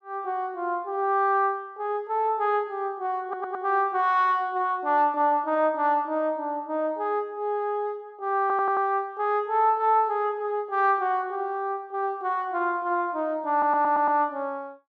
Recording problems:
stutter; at 3 s, at 8.5 s and at 14 s

